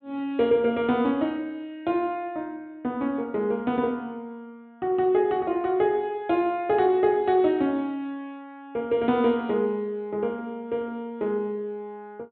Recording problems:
treble missing; nothing above 4 kHz

